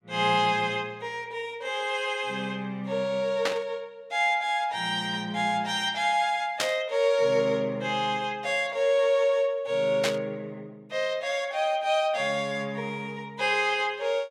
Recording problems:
burst of static; at 3.5 s, at 6.5 s and at 10 s; peak +4 dB vs average level

